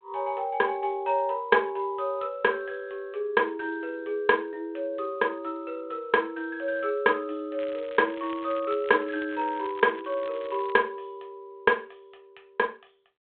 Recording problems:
telephone audio; 260 Hz to 3.6 kHz, G.726
crackling; from 7.5 to 11 s; loose cable, SNR 21 dB

